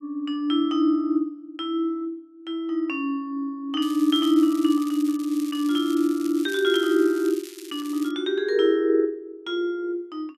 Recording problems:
crackling; from 4 to 5 s and from 5 to 8 s; loose cable, SNR 19 dB

